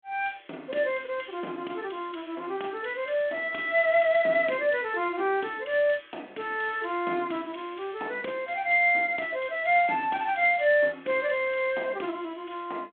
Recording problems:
phone line; 240 Hz to 3.5 kHz, G.726

